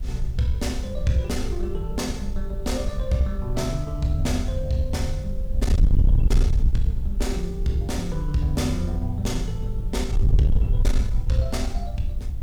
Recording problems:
distortion; soft clipping, signal-to-distortion ratio 6 dB
hiss; SNR 30 dB
wind noise; below 70 Hz, SNR 0 dB

